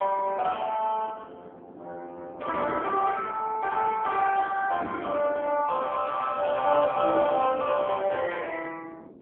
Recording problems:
phone line; 280 Hz to 3.4 kHz, AMR-NB
wind noise; below 450 Hz, SNR 16 dB

